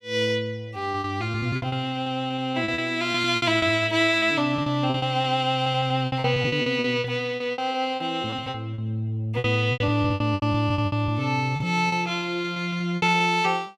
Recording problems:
lost packets; 16% of the sound replaced, filled with repeated pitch periods

